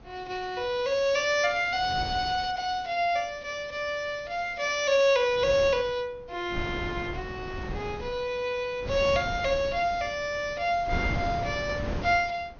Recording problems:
treble cut off; nothing above 6.6 kHz
wind on the microphone; below 460 Hz, SNR 10 dB

